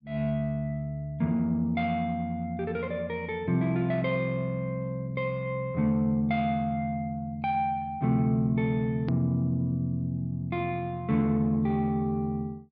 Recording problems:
treble cut off; nothing above 5.5 kHz
hard cut with a click; at 9 s

